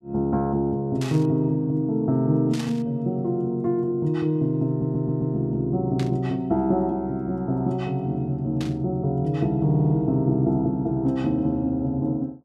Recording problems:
burst of static; 4 times, first at 1 s; peak -8 dB vs average level
stutter; at 4.5 s and at 9.5 s

